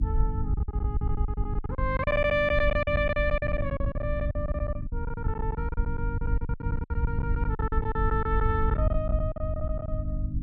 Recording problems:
electrical hum; 50 Hz, harmonics up to 300 Hz, SNR 5 dB
rumble; below 82 Hz, SNR 1 dB
packet loss; 19% of the sound replaced, filled with silence

